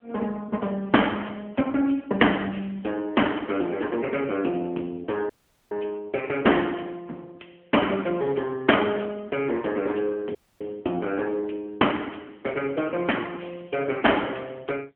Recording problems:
phone line; 260 Hz to 3.2 kHz, AMR-NB
dropout; at 5.5 s and at 10 s

